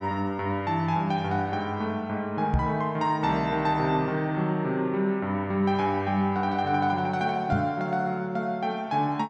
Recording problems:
microphone thump; at 2.5 s and at 7.5 s; peak +5 dB vs average level

